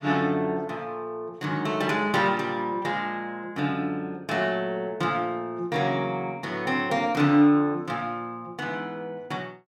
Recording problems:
none

